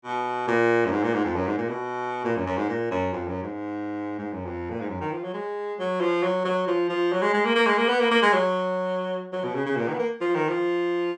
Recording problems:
none

